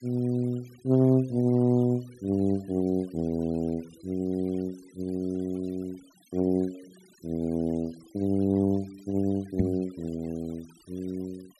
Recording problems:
noise reduction artefacts; signal-to-artefact ratio 27 dB
microphone bump; at 9.5 s; peak +6 dB vs average level

